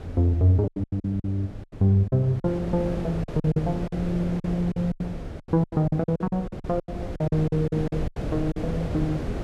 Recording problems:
wind on the microphone; below 380 Hz, SNR 9 dB
packet loss; 16% of the sound replaced, filled with silence

